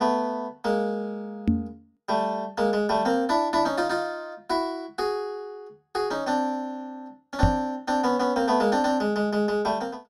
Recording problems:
microphone thump; at 1.5 s and at 7.5 s; peak +8 dB vs average level

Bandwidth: 16 kHz